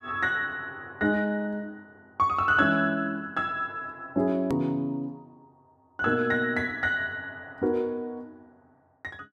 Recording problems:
hard cut with a click; at 4.5 s

